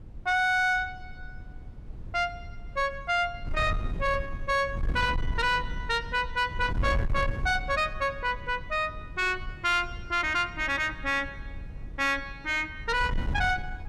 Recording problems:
distorted audio; soft clipping, signal-to-distortion ratio 11 dB
wind on the microphone; below 100 Hz, SNR 9 dB

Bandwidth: 14.5 kHz